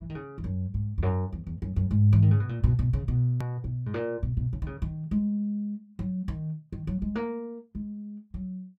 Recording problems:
click at an edit; at 3.5 s

